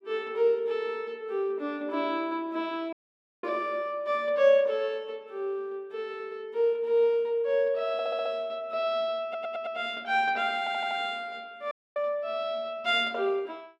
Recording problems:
audio cutting out; at 3 s for 0.5 s and at 12 s
stutter; at 8 s, at 9 s and at 11 s

